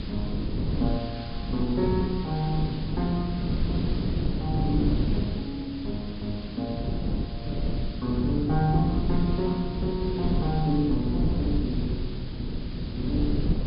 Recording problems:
treble missing; nothing above 5.1 kHz
hiss; SNR 15 dB
wind noise; below 220 Hz, SNR 1 dB

